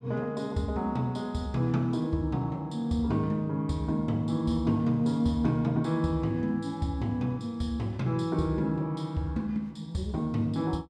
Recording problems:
none

